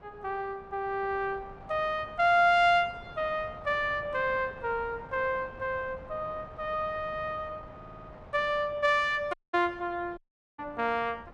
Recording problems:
wind on the microphone; below 830 Hz, SNR 20 dB
stutter; at 8 s
audio cutting out; at 9.5 s and at 10 s

